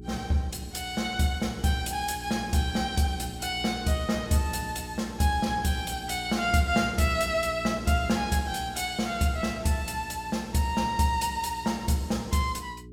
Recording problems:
hum; 60 Hz, harmonics up to 420 Hz, SNR 15 dB

